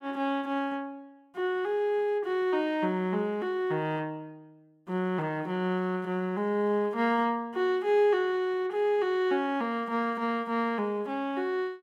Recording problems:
none

